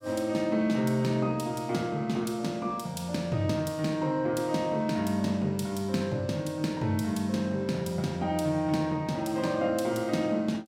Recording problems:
none

